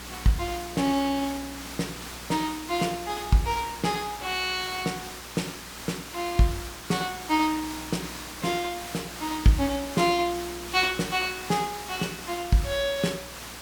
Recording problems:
hum; 60 Hz, harmonics up to 480 Hz, SNR 21 dB
hiss; slope -1 dB per octave, SNR 10 dB

